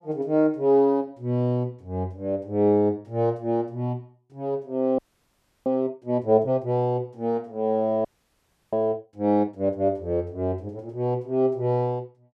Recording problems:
audio freezing; at 5 s for 0.5 s and at 8 s for 0.5 s

